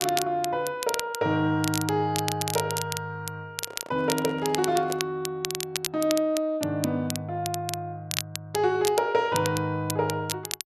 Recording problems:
crackle; vinyl, SNR 7 dB
microphone handling noise; from 3.5 to 5 s; peak -7 dB vs average level

